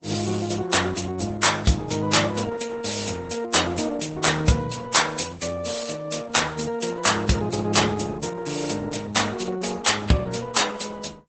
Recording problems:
codec artefacts; Vorbis, then Opus, log-spectral distance 7 dB, nothing above 8.2 kHz

